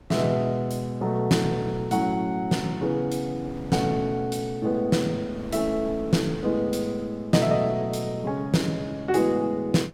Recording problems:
wind on the microphone; below 360 Hz, SNR 21 dB

